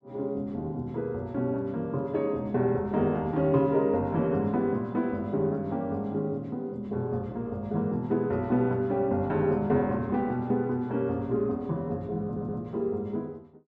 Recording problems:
stutter; at 12 s

